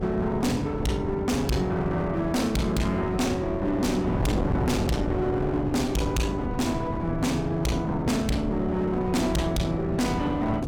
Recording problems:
distorted audio; hard clipping, uneven, signal-to-distortion ratio 6 dB
wind on the microphone; below 350 Hz, SNR 5 dB

